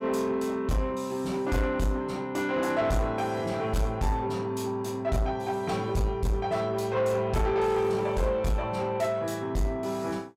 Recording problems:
distorted audio; soft clipping, signal-to-distortion ratio 11 dB

